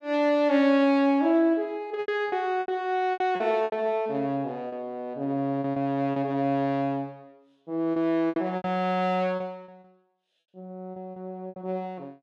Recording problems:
packet loss; 9% of the sound replaced, filled with repeated pitch periods

